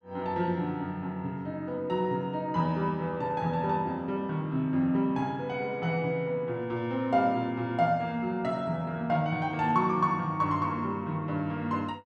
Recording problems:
none

